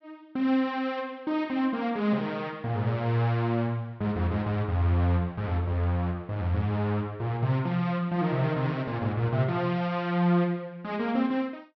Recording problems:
treble cut off; nothing above 5.9 kHz

